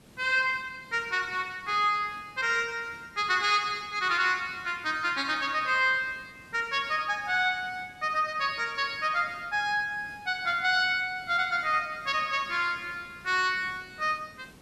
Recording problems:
background hiss; slope -5 dB per octave, SNR 26 dB

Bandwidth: 13 kHz